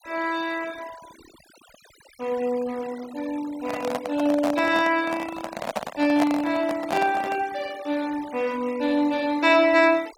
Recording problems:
noise reduction artefacts; signal-to-artefact ratio 20 dB
microphone handling noise; from 3.5 to 7.5 s; peak +2 dB vs average level

